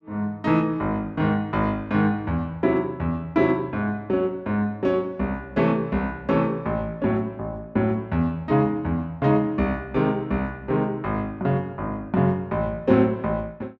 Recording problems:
none

